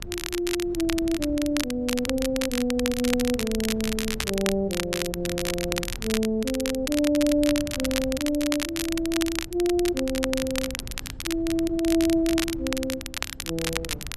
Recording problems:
wind noise; below 130 Hz, SNR 15 dB
crackle; vinyl, SNR 5 dB

